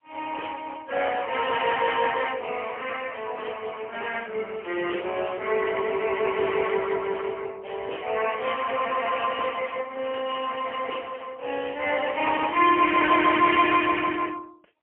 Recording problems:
phone line; 280 Hz to 3.3 kHz, AMR-NB, then MP3
crackling; from 4.5 to 7.5 s and from 8 to 9.5 s; loose cable, SNR 25 dB

